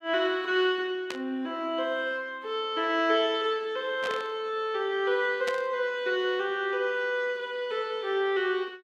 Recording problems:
static burst; at 1 s, at 4 s and at 5.5 s; peak -3 dB vs average level

